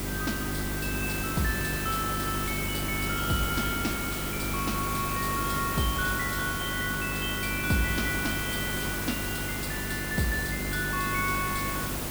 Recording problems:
mains hum; 50 Hz, harmonics up to 400 Hz, SNR 5 dB
hiss; slope -4 dB per octave, SNR 2 dB

